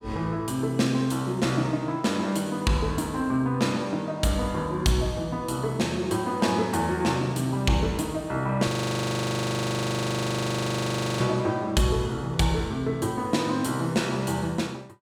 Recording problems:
audio freezing; at 8.5 s for 2.5 s

